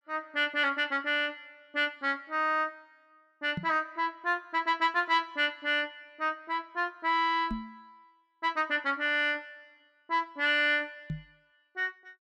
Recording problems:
microphone bump; at 3.5 s, at 7.5 s and at 11 s; peak -2 dB vs average level

